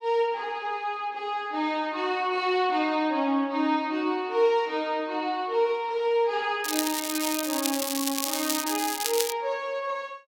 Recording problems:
crackling; from 6.5 to 9.5 s; loose cable, SNR 2 dB

